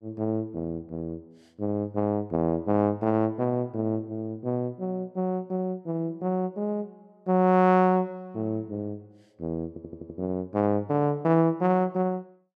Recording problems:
audio stuttering; at 9.5 s

